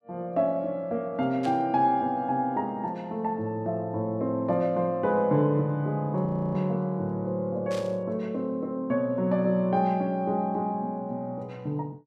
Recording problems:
burst of static; at 1.5 s and at 7.5 s; peak -10 dB vs average level
audio freezing; at 6.5 s

